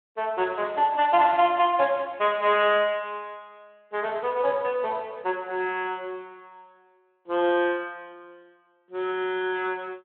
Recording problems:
telephone audio; 300 Hz to 3.5 kHz, Speex

